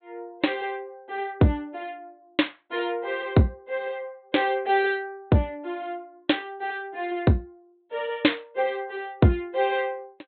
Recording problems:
treble cut off; nothing above 4 kHz

